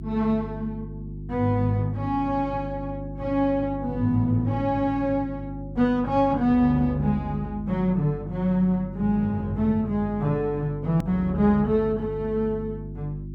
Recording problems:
mains hum; 50 Hz, harmonics up to 350 Hz, SNR 12 dB
click at an edit; at 11 s

